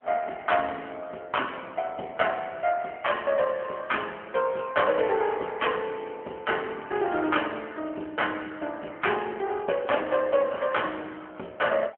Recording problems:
telephone audio; 260 Hz to 3.2 kHz, AMR-NB

